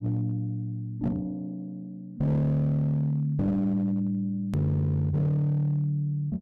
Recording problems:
distorted audio; hard clipping, signal-to-distortion ratio 12 dB
edit click; at 4.5 s

